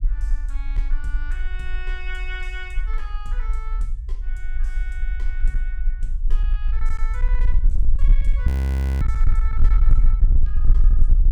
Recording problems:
distortion; hard clipping, uneven, signal-to-distortion ratio 11 dB
rumble; below 44 Hz, strongest tone 18 Hz, SNR -15 dB
audio freezing; at 8.5 s for 0.5 s

